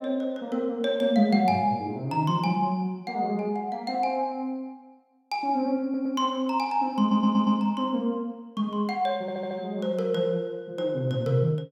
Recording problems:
audio stuttering; at 6 s, at 7 s and at 9 s

